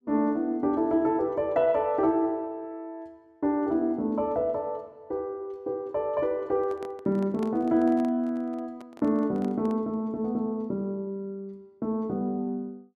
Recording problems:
microphone handling noise; from 6.5 to 10 s; peak -8 dB vs average level

